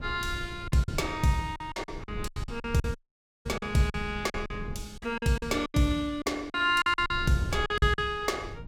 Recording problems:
low-frequency rumble; below 120 Hz, SNR 13 dB
lost packets; 14% of the sound replaced, filled with silence
dropout; at 3 s for 0.5 s

